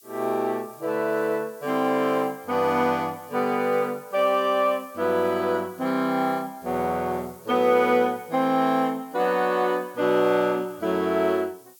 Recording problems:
background hiss; SNR 25 dB

